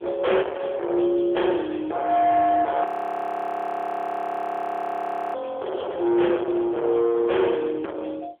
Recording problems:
phone line; 300 Hz to 3.4 kHz, AMR-NB
distortion; soft clipping, signal-to-distortion ratio 7 dB
audio freezing; at 3 s for 2.5 s

